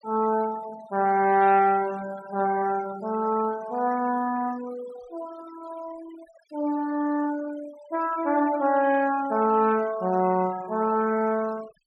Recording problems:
noise reduction artefacts; signal-to-artefact ratio 21 dB

